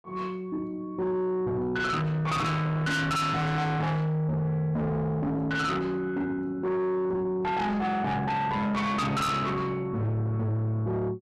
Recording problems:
distorted audio; soft clipping, signal-to-distortion ratio 7 dB

